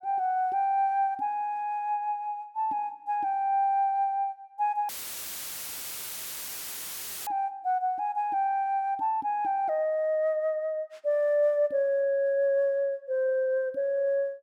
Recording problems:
dropout; at 5 s for 2.5 s; filled with static

